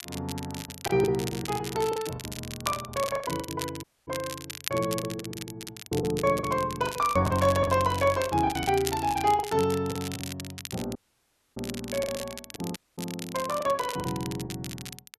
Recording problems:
crackle; vinyl, SNR 10 dB
lost packets; 14% of the sound replaced, filled with the last packet
audio cutting out; at 4 s, at 11 s for 0.5 s and at 13 s

